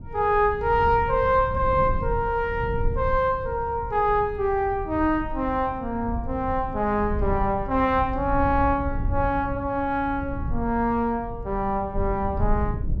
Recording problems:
rumble; below 100 Hz, SNR 9 dB

